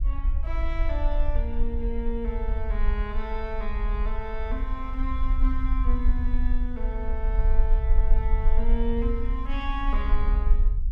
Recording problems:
rumble; below 46 Hz, SNR -7 dB

